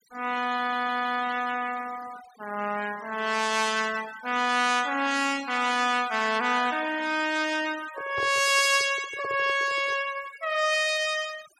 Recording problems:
denoising artefacts; signal-to-artefact ratio 16 dB
audio stuttering; at 0.5 s
handling noise; from 8 to 10 s; peak -9 dB vs average level

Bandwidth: 16 kHz